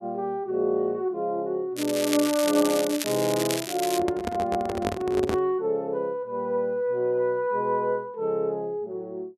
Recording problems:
crackling; from 2 to 4 s; loose cable, SNR 6 dB
handling noise; from 4 to 5.5 s; peak +3 dB vs average level

